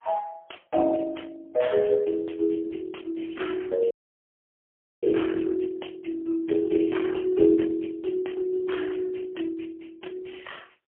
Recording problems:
phone line; 280 Hz to 3.3 kHz, AMR-NB, then MP3
audio cutting out; at 4 s for 1 s

